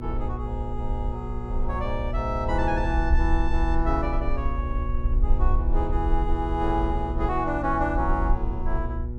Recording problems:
hum; 60 Hz, harmonics up to 960 Hz, SNR 7 dB
rumble; below 62 Hz, SNR 0 dB

